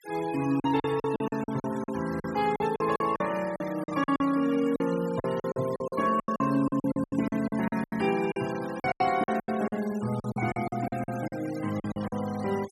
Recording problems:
noise reduction artefacts; signal-to-artefact ratio 17 dB
lost packets; 17% of the sound replaced, filled with silence

